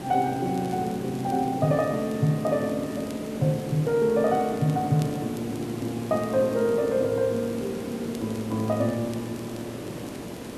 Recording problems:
hiss; SNR 10 dB
crackling; vinyl, SNR 27 dB

